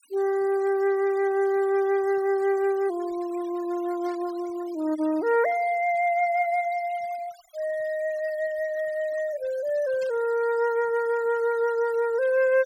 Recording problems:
noise reduction artefacts; signal-to-artefact ratio 22 dB
burst of static; at 4 s and at 10 s; peak -19 dB vs average level

